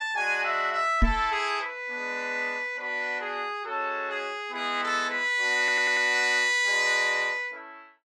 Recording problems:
microphone thump; at 1 s; peak +5 dB vs average level
stutter; at 5.5 s

